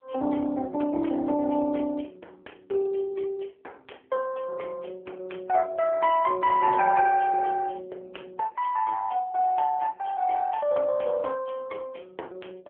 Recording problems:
phone line; 280 Hz to 3.2 kHz, AMR-NB

